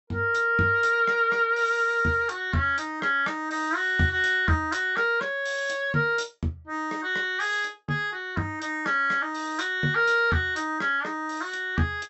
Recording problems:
low-pass filter; nothing above 7.9 kHz

